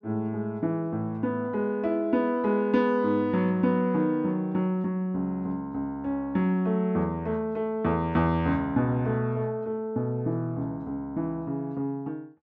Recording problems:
none

